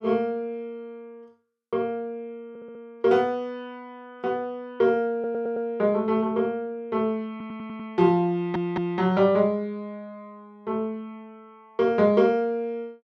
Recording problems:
audio stuttering; 4 times, first at 2.5 s

